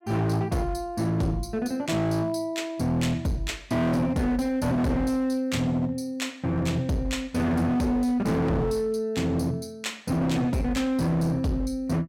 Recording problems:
distorted audio; hard clipping, signal-to-distortion ratio 7 dB

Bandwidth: 16.5 kHz